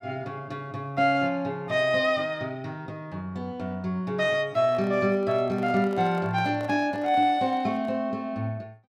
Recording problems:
microphone handling noise; from 4.5 to 8 s; peak -12 dB vs average level

